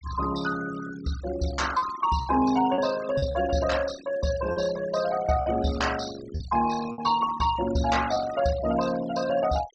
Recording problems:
treble missing; nothing above 8 kHz
noise reduction artefacts; signal-to-artefact ratio 13 dB
lost packets; 4% of the sound replaced, filled with repeated pitch periods

